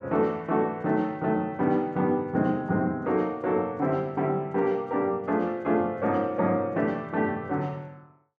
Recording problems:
none

